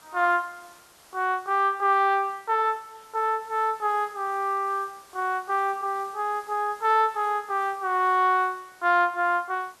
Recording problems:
background hiss; SNR 27 dB

